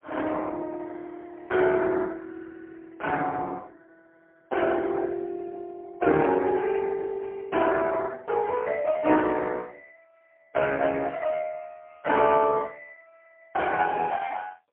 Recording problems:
phone line; 190 Hz to 3.1 kHz, AMR-NB, then MP3

